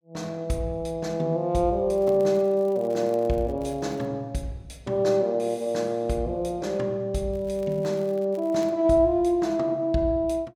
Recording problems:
crackle; from 2 to 4 s and from 7.5 to 8.5 s; loose cable, SNR 29 dB

